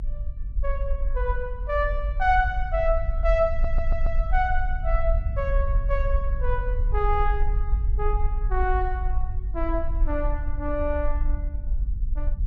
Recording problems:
rumble; below 50 Hz, SNR 0 dB
stutter; at 3.5 s

